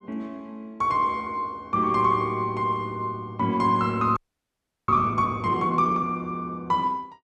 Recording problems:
frozen audio; at 4 s for 0.5 s

